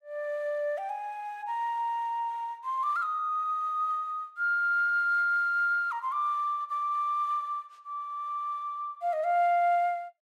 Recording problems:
none

